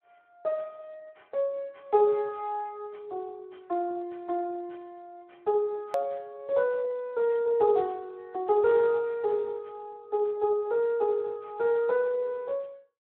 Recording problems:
phone line; 280 Hz to 3.1 kHz, Speex
hard cut with a click; at 6 s

